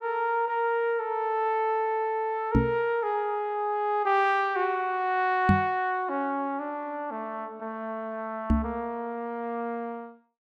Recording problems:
knock on the microphone; at 2.5 s, at 5.5 s and at 8.5 s; peak +9 dB vs average level

